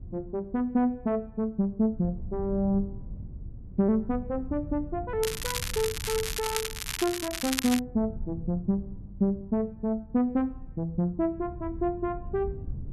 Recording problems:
low-frequency rumble; below 110 Hz, SNR 13 dB
crackling; from 5 to 8 s; loose cable, SNR 3 dB

